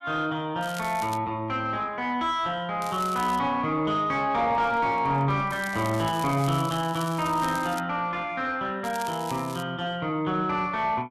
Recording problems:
distorted audio; soft clipping, signal-to-distortion ratio 11 dB
crackle; 4 times, first at 0.5 s; loose cable, SNR 16 dB
microphone handling noise; from 4.5 to 7 s; peak -12 dB vs average level

